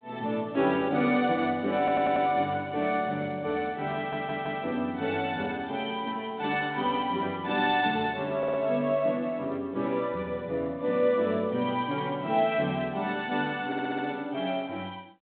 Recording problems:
phone line; 170 Hz to 3.7 kHz, G.726
stutter; 4 times, first at 2 s

